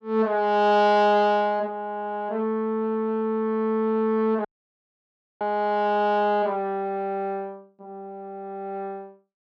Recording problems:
audio cutting out; at 4.5 s for 1 s

